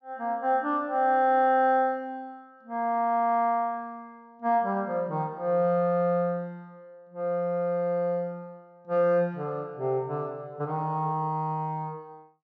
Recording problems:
treble missing; nothing above 8 kHz

